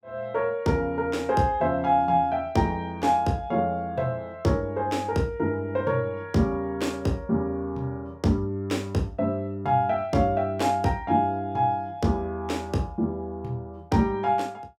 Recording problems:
none

